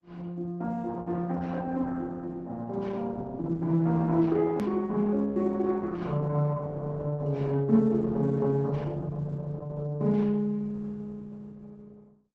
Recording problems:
codec artefacts; Opus, log-spectral distance 2 dB, nothing above 13.1 kHz
click at an edit; at 4.5 s

